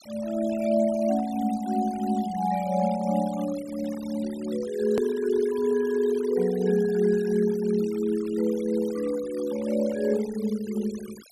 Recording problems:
noise reduction artefacts; signal-to-artefact ratio 19 dB
click at an edit; at 5 s

